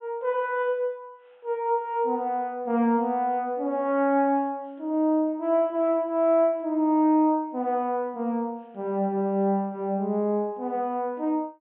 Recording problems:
treble missing; nothing above 3.4 kHz

